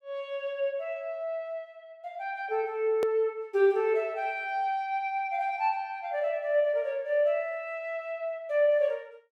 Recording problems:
edit click; at 3 s

